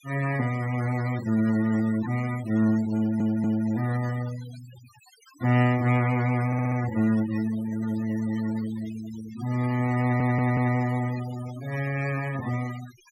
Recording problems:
denoising artefacts; signal-to-artefact ratio 17 dB
stutter; at 3 s, at 6.5 s and at 10 s

